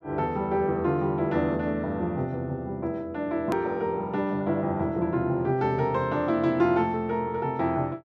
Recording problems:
edit click; at 3.5 s

